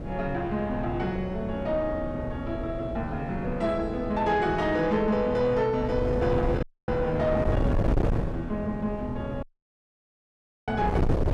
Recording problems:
distortion; soft clipping, signal-to-distortion ratio 10 dB
wind noise; below 350 Hz, SNR 5 dB
dropout; at 6.5 s and at 9.5 s for 1.5 s

